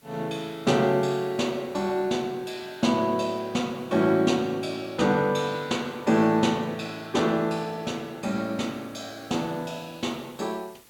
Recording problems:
background hiss; slope -2 dB per octave, SNR 29 dB

